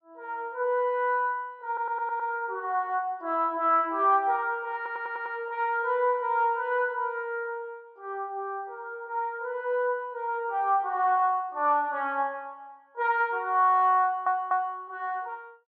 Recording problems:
stutter; at 1.5 s, at 5 s and at 14 s

